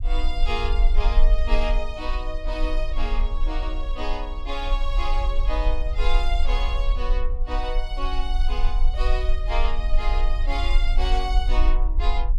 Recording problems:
low-frequency rumble; below 40 Hz, strongest tone 20 Hz, SNR -5 dB

